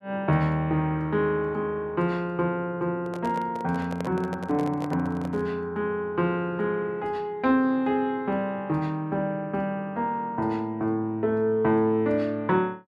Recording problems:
handling noise; from 3 to 5.5 s; peak -4 dB vs average level

